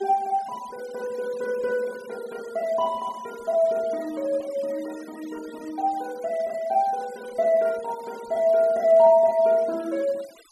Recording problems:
denoising artefacts; signal-to-artefact ratio 24 dB

